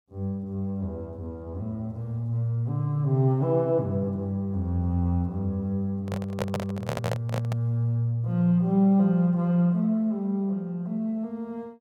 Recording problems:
microphone handling noise; from 6 to 7.5 s; peak +1 dB vs average level

